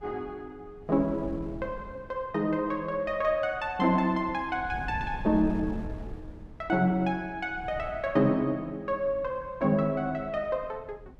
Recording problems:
wind on the microphone; below 160 Hz, SNR 16 dB

